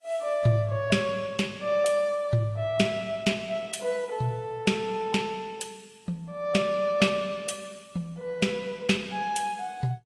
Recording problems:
lossy compression; AAC, log-spectral distance 3 dB

